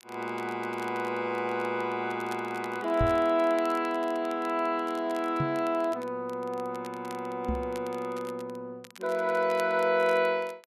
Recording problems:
crackling; vinyl, SNR 23 dB
knock on the microphone; at 3 s, at 5.5 s and at 7.5 s; peak +3 dB vs average level

